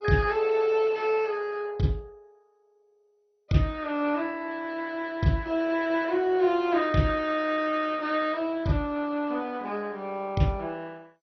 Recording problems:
lossy codec; MP2, log-spectral distance 3 dB, nothing above 6 kHz

